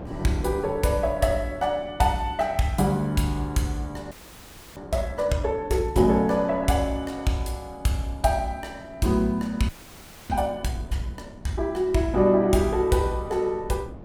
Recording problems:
wind on the microphone; below 390 Hz, SNR 20 dB
frozen audio; at 4 s for 0.5 s and at 9.5 s for 0.5 s

